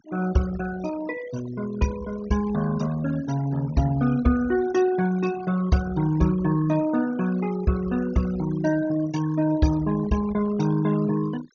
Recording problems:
low-pass filter; nothing above 6.7 kHz
noise reduction artefacts; signal-to-artefact ratio 16 dB

